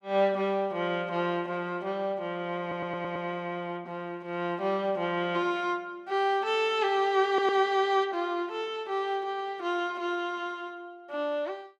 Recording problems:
audio stuttering; at 2.5 s and at 7.5 s

